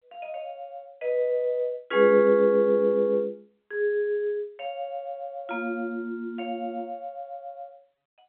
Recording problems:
telephone audio; 260 Hz to 3.3 kHz, G.711

